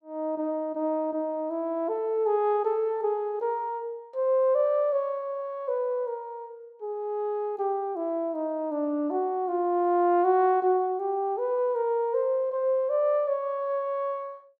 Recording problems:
none

